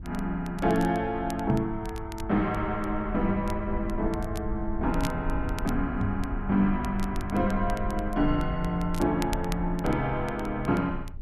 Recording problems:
low-frequency rumble; below 70 Hz, SNR 9 dB
crackling; vinyl, SNR 19 dB
microphone bump; at 1.5 s and at 6 s; peak +4 dB vs average level

